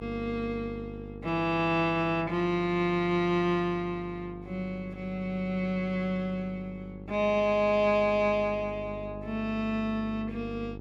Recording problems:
hum; 50 Hz, harmonics up to 900 Hz, SNR 14 dB

